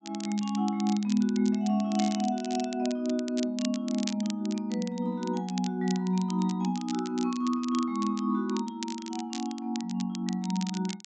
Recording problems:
low-pass filter; nothing above 8 kHz
crackle; vinyl, SNR 13 dB

